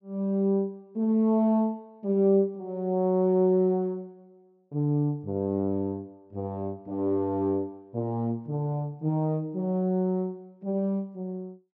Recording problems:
low-pass filter; nothing above 8 kHz

